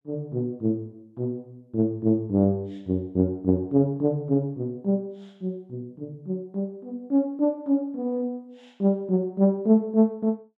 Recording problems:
none

